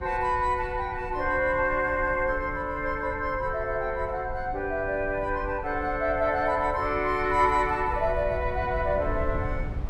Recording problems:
low-frequency rumble; below 94 Hz, SNR 12 dB

